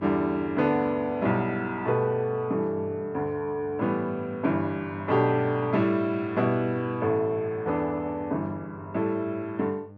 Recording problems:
hum; 50 Hz, harmonics up to 1.2 kHz, SNR 20 dB

